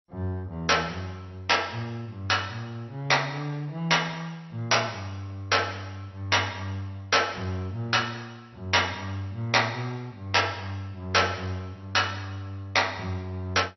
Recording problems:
lossy codec; MP2, log-spectral distance 5 dB, nothing above 5.8 kHz

